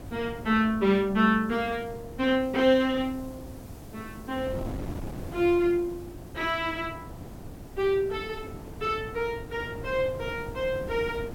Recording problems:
background hiss; slope +4 dB per octave, SNR 29 dB
wind noise; below 340 Hz, SNR 14 dB

